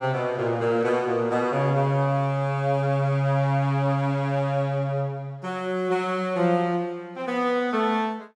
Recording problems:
none

